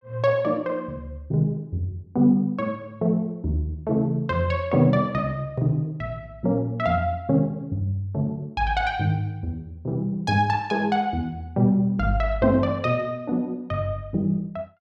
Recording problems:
none

